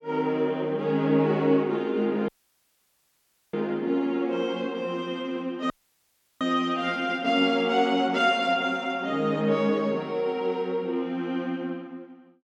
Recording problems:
dropout; at 2.5 s for 1.5 s and at 5.5 s for 0.5 s

